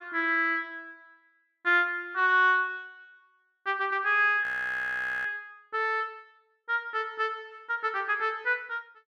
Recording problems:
audio freezing; at 4.5 s for 1 s

